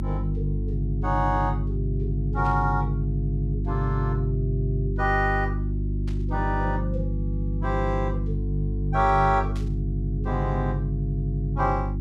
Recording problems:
electrical hum; 50 Hz, harmonics up to 350 Hz, SNR 0 dB
burst of static; at 2.5 s, at 6 s and at 9.5 s; peak -12 dB vs average level

